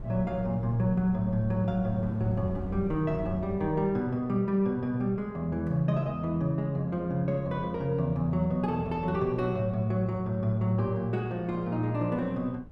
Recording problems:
wind on the microphone; below 180 Hz, SNR 16 dB

